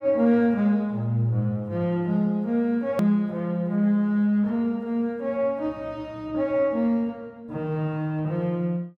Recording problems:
click at an edit; at 3 s

